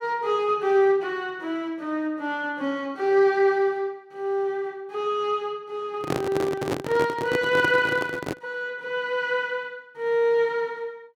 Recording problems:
microphone handling noise; from 6 to 8.5 s; peak +2 dB vs average level

